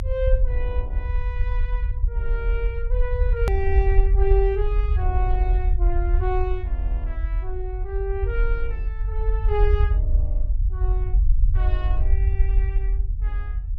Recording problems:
low-frequency rumble; below 60 Hz, SNR -7 dB
hard cut with a click; at 3.5 s

